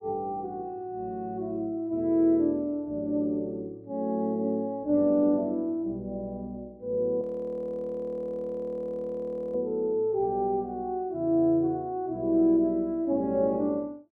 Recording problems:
audio freezing; at 7 s for 2.5 s

